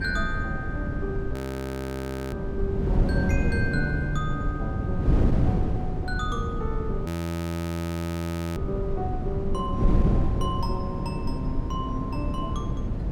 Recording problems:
wind noise; below 200 Hz, SNR -5 dB
audio freezing; at 1.5 s for 1 s and at 7 s for 1.5 s

